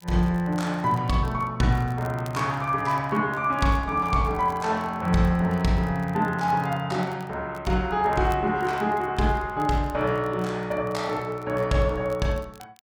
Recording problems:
crackle; vinyl, SNR 29 dB

